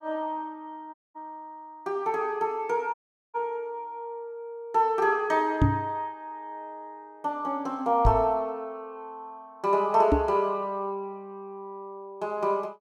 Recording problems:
audio cutting out; at 1 s and at 3 s
knock on the microphone; at 5.5 s, at 8 s and at 10 s; peak +9 dB vs average level

